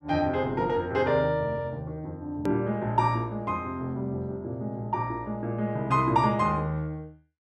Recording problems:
click at an edit; at 2.5 s

